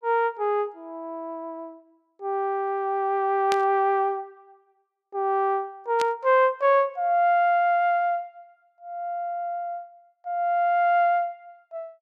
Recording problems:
burst of static; at 3.5 s and at 6 s; peak -3 dB vs average level

